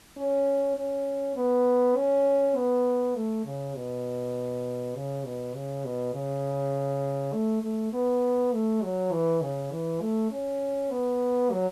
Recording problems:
hiss; slope -2 dB per octave, SNR 25 dB

